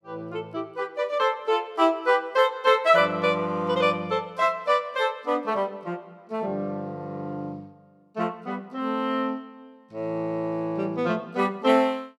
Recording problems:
none

